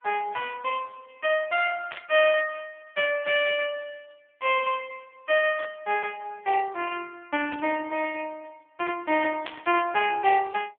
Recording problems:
telephone audio; 320 Hz to 3.3 kHz, AMR-NB
burst of static; 4 times, first at 2 s; peak -5 dB vs average level

